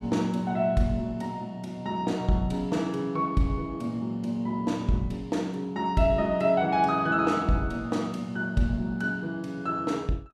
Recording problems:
none

